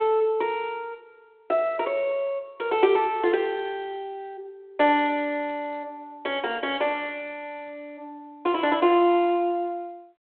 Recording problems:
phone line; 300 Hz to 3.5 kHz, G.726

